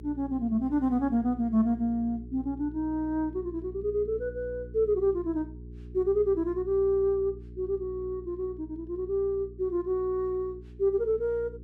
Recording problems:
electrical hum; 60 Hz, harmonics up to 420 Hz, SNR 16 dB

